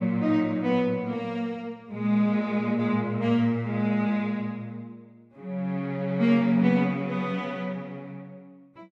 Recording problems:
none

